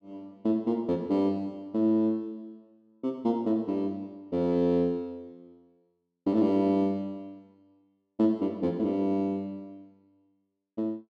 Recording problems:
none

